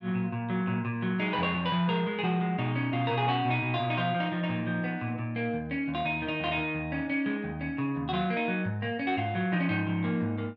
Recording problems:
none

